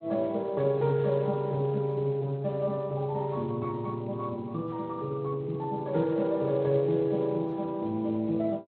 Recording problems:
codec artefacts; Speex, log-spectral distance 2 dB, nothing above 4.1 kHz

